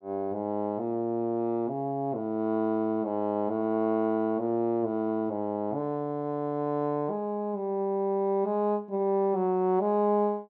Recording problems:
none

